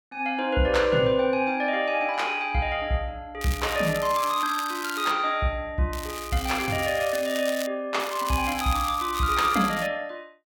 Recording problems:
crackle; from 3.5 to 5 s, from 6 to 7.5 s and from 8 to 10 s; loose cable, SNR 12 dB

